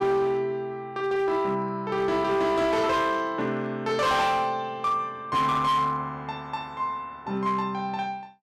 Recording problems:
distortion; hard clipping, signal-to-distortion ratio 11 dB

